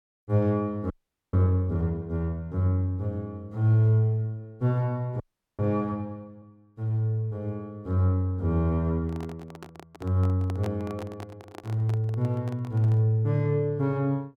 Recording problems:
frozen audio; at 1 s and at 5 s
handling noise; from 9 to 13 s; peak -6 dB vs average level

